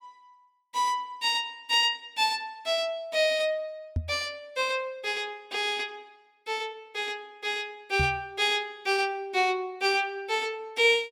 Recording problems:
microphone thump; at 4 s and at 8 s; peak +2 dB vs average level

